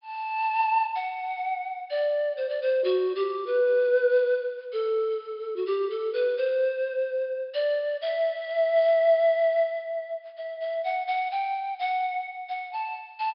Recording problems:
low-pass filter; nothing above 5.5 kHz

